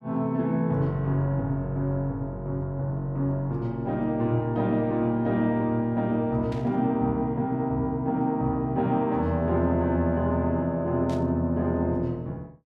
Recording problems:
static burst; at 6.5 s and at 11 s; peak -14 dB vs average level

